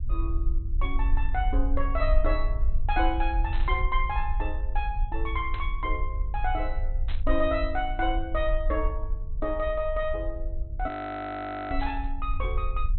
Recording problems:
low-pass filter; nothing above 4.1 kHz
low-frequency rumble; below 48 Hz, SNR 0 dB
static burst; 4 times, first at 3.5 s; peak -6 dB vs average level
audio freezing; at 11 s for 1 s

